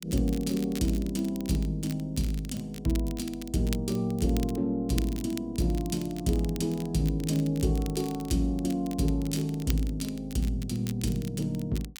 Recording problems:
crackle; vinyl, SNR 16 dB

